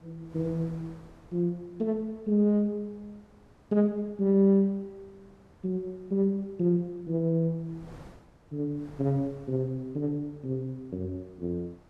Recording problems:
wind on the microphone; below 630 Hz, SNR 25 dB

